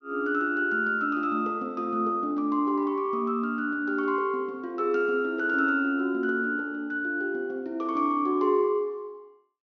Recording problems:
low-pass filter; nothing above 6.2 kHz

